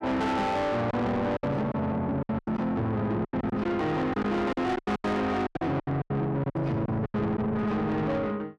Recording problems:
distortion; soft clipping, signal-to-distortion ratio 8 dB
packet loss; 13% of the sound replaced, filled with silence

